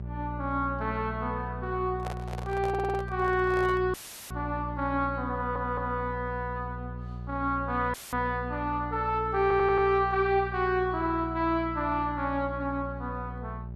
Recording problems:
mains hum; 60 Hz, harmonics up to 600 Hz, SNR 9 dB
microphone handling noise; from 2 to 4 s; peak -6 dB vs average level
stutter; at 2.5 s, at 5.5 s and at 9.5 s
audio cutting out; at 4 s and at 8 s; filled with static

